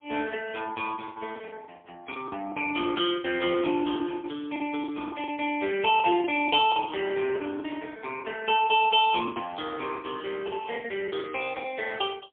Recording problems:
phone line; 300 Hz to 3.3 kHz, AMR-NB, then MP3
lost packets; 12% of the sound replaced, filled with the last packet

